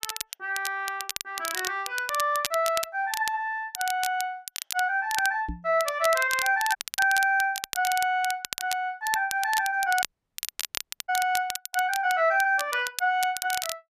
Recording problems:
crackle; vinyl, SNR 8 dB
microphone thump; at 5.5 s; peak -4 dB vs average level
audio cutting out; at 7 s and at 10 s for 1 s

